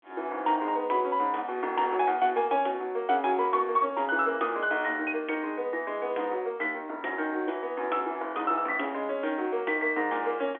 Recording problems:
phone line; 260 Hz to 3.5 kHz, G.711

